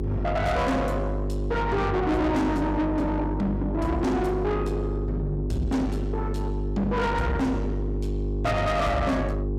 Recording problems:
distorted audio; soft clipping, signal-to-distortion ratio 7 dB
hum; 50 Hz, harmonics up to 700 Hz, SNR 3 dB

